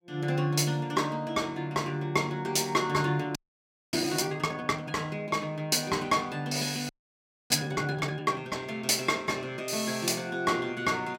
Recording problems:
audio freezing; at 3.5 s for 0.5 s and at 7 s for 0.5 s

